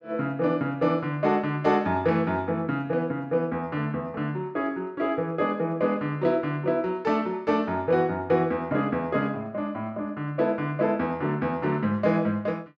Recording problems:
none

